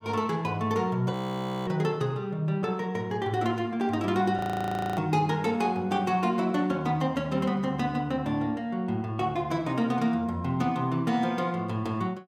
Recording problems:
audio freezing; at 1 s for 0.5 s and at 4.5 s for 0.5 s

